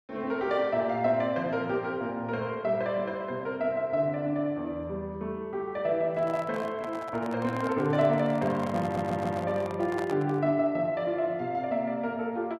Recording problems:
microphone handling noise; from 6 to 10 s; peak -4 dB vs average level
stutter; at 9 s

